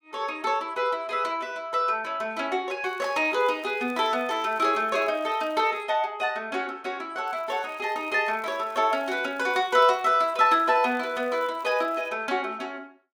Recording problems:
crackle; from 3 to 6 s and from 7.5 to 12 s; loose cable, SNR 30 dB

